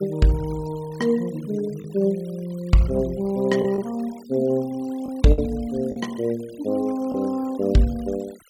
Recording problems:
denoising artefacts; signal-to-artefact ratio 23 dB
packet loss; 2% of the sound replaced, filled with the last packet

